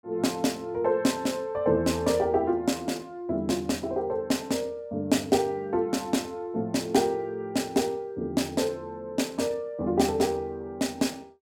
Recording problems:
none

